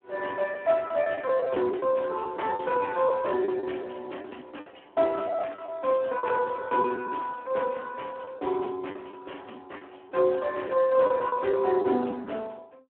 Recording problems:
phone line; 220 Hz to 3.4 kHz, Speex
lost packets; 7% of the sound replaced, filled with the last packet

